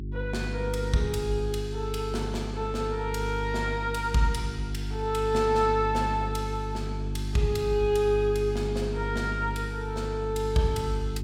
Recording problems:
hum; 50 Hz, harmonics up to 400 Hz, SNR 5 dB

